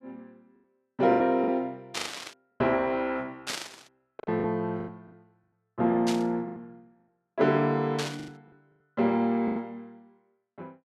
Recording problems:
lost packets; 9% of the sound replaced, filled with the last packet
burst of static; 4 times, first at 2 s; peak 0 dB vs average level

